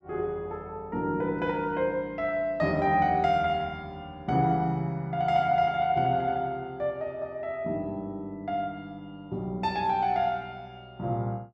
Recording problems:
none

